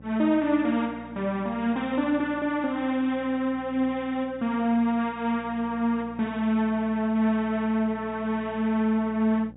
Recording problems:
treble cut off; nothing above 4 kHz
hum; 60 Hz, harmonics up to 840 Hz, SNR 22 dB

